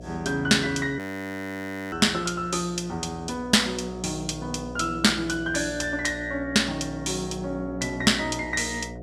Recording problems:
electrical hum; 60 Hz, harmonics up to 720 Hz, SNR 15 dB
audio freezing; at 1 s for 1 s

